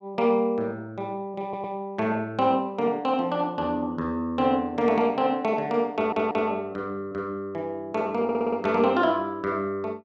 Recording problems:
stutter; at 1.5 s, at 6 s and at 8 s

